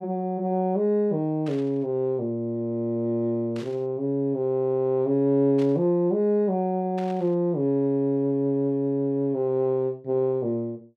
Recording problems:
static burst; 4 times, first at 1.5 s; peak -14 dB vs average level

